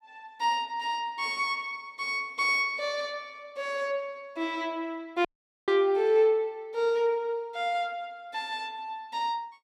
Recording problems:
audio cutting out; at 5.5 s

